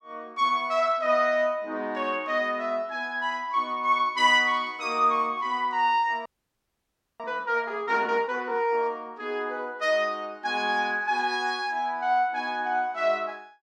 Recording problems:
audio freezing; at 6.5 s for 1 s

